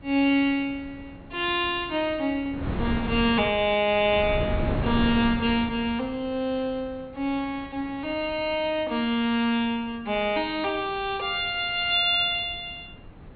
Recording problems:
low-pass filter; nothing above 4.4 kHz
wind noise; below 340 Hz, SNR 8 dB

